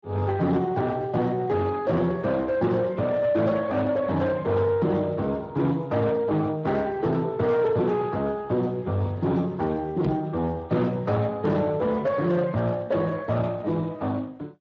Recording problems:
lossy compression; Speex, log-spectral distance 2 dB
distorted audio; soft clipping, signal-to-distortion ratio 11 dB
knock on the microphone; at 10 s; peak +2 dB vs average level

